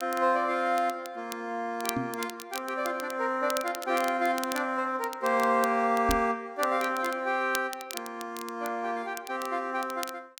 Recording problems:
crackle; vinyl, SNR 13 dB
microphone bump; at 2 s and at 6 s; peak +1 dB vs average level

